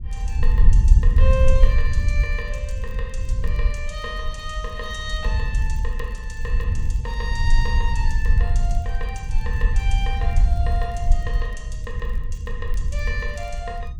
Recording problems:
rumble; below 64 Hz, SNR -9 dB
crackle; vinyl, SNR 26 dB

